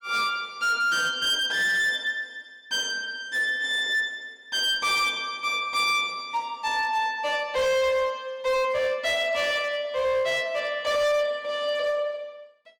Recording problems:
distorted audio; hard clipping, signal-to-distortion ratio 11 dB

